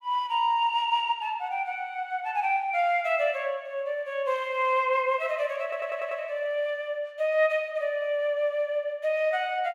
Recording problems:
stutter; at 5.5 s

